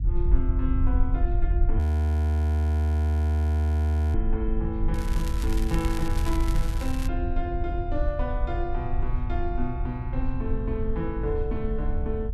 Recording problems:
low-frequency rumble; below 78 Hz, SNR -5 dB
audio freezing; at 2 s for 2.5 s
crackling; from 5 to 7 s; loose cable, SNR 8 dB

